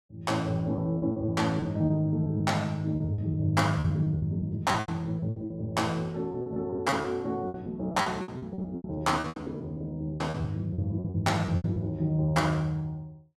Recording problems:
packet loss; 14% of the sound replaced, filled with repeated pitch periods

